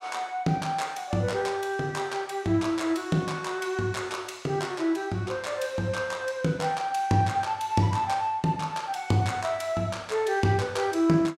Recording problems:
none

